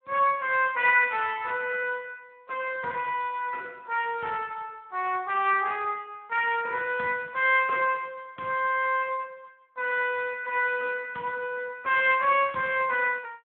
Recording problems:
phone line; 240 Hz to 3.7 kHz, Speex

